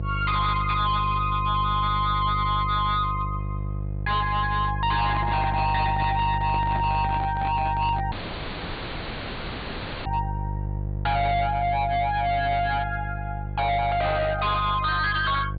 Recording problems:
treble missing; nothing above 4.6 kHz
distorted audio; hard clipping, signal-to-distortion ratio 7 dB
hum; 50 Hz, harmonics up to 550 Hz, SNR 6 dB
microphone handling noise; from 5 to 8 s; peak -5 dB vs average level
dropout; at 8 s for 2 s

